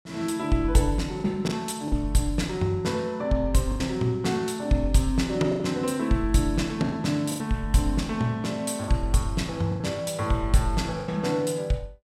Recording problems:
packet loss; 5% of the sound replaced, filled with the last packet

